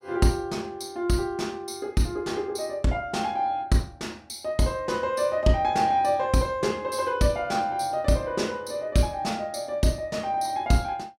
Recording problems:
none

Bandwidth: 16 kHz